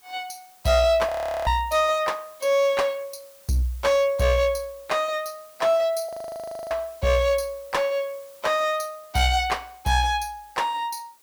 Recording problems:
distorted audio; hard clipping, uneven, signal-to-distortion ratio 11 dB
background hiss; slope 0 dB per octave, SNR 26 dB
audio freezing; at 1 s and at 6 s for 0.5 s

